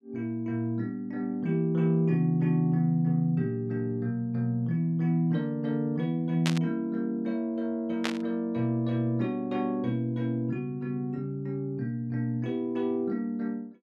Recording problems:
burst of static; at 6.5 s and at 8 s; peak +2 dB vs average level

